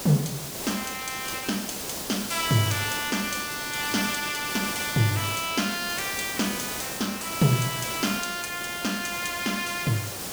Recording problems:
hiss; SNR 5 dB

